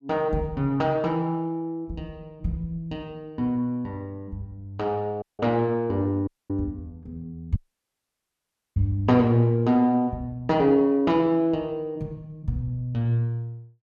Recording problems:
audio cutting out; at 5 s, at 6.5 s and at 7.5 s for 1 s

